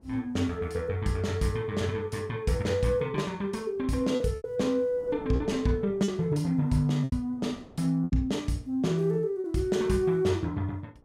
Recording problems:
wind noise; below 530 Hz, SNR 24 dB
lost packets; 4% of the sound replaced, filled with repeated pitch periods

